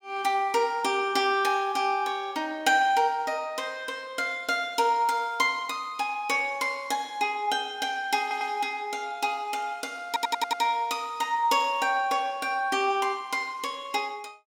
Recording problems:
stutter; at 8 s and at 10 s

